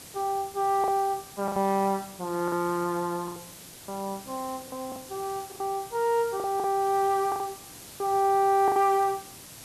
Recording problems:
hiss; SNR 16 dB
packet loss; 9% of the sound replaced, filled with the last packet

